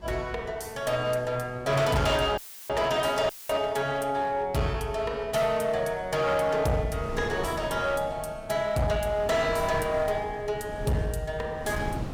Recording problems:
distortion; hard clipping, uneven, signal-to-distortion ratio 10 dB
wind on the microphone; below 420 Hz, SNR 14 dB
audio cutting out; at 2.5 s and at 3.5 s; filled with static

